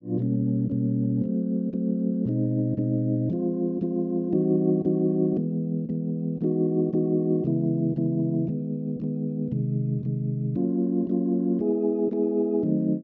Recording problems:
none

